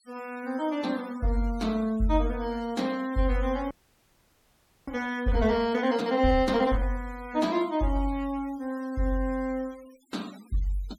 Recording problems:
noise reduction artefacts; signal-to-artefact ratio 23 dB
frozen audio; at 3.5 s for 1 s

